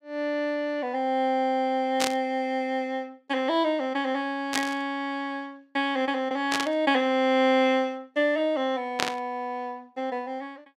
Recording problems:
burst of static; 4 times, first at 2 s; peak +4 dB vs average level

